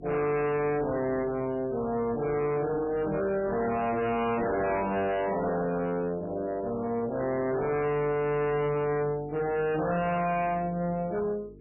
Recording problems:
lossy codec; MP3, log-spectral distance 3 dB, nothing above 2.8 kHz
distorted audio; hard clipping, uneven, signal-to-distortion ratio 6 dB
electrical hum; 50 Hz, harmonics up to 450 Hz, SNR 21 dB

